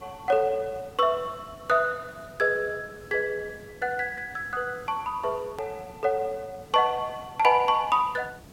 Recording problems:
background hiss; slope -5 dB per octave, SNR 22 dB
hard cut with a click; at 5.5 s

